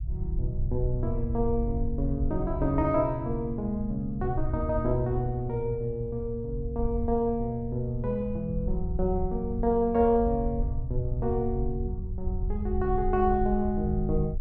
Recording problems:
rumble; below 74 Hz, SNR 6 dB

